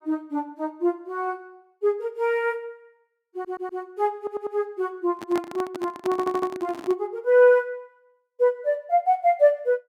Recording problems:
audio stuttering; at 3.5 s, at 4 s and at 6 s
handling noise; from 5 to 7 s; peak -4 dB vs average level

